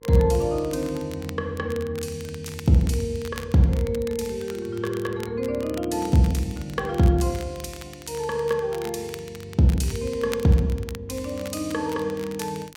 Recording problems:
hum; 50 Hz, harmonics up to 1.1 kHz, SNR 28 dB
crackle; vinyl, SNR 19 dB

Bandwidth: 16.5 kHz